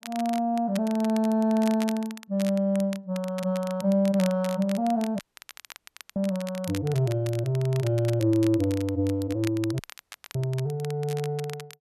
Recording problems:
crackling; vinyl, SNR 17 dB
dropout; at 5 s for 1 s and at 10 s for 0.5 s

